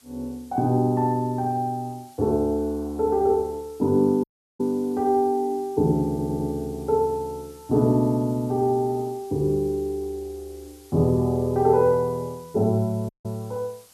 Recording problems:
background hiss; slope 0 dB per octave, SNR 27 dB
dropout; at 4 s and at 13 s
stutter; at 6 s

